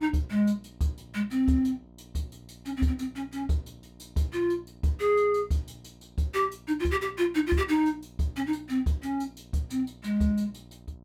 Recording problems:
electrical hum; 60 Hz, harmonics up to 1 kHz, SNR 24 dB

